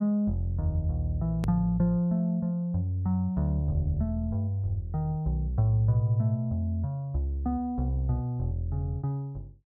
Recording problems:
click at an edit; at 1.5 s

